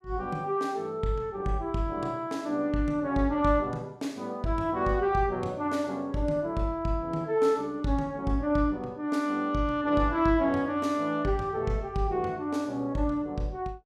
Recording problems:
none

